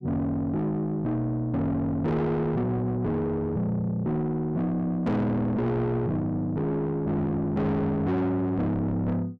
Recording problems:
distorted audio; soft clipping, signal-to-distortion ratio 8 dB

